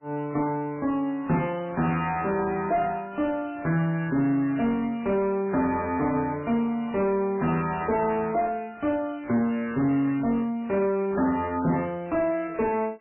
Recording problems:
lossy codec; MP3, log-spectral distance 2 dB, nothing above 2.4 kHz
distortion; soft clipping, signal-to-distortion ratio 11 dB

